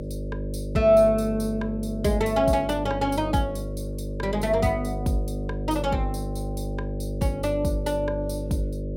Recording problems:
electrical hum; 50 Hz, harmonics up to 600 Hz, SNR 7 dB

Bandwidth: 16.5 kHz